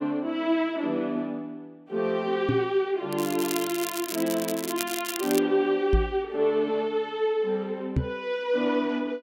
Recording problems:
knock on the microphone; at 2.5 s, at 6 s and at 8 s; peak +6 dB vs average level
crackling; from 3 to 5.5 s; loose cable, SNR 7 dB

